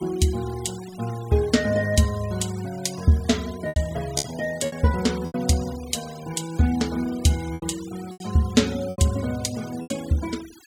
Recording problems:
denoising artefacts; signal-to-artefact ratio 18 dB
packet loss; 6% of the sound replaced, filled with repeated pitch periods

